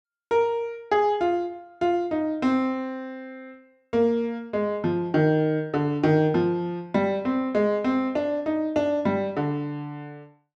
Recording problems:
none

